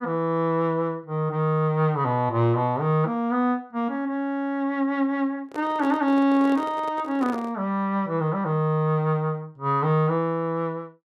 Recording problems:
handling noise; from 5.5 to 7.5 s; peak -7 dB vs average level

